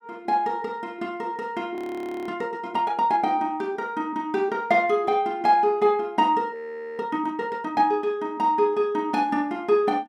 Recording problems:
audio freezing; at 2 s for 0.5 s and at 6.5 s

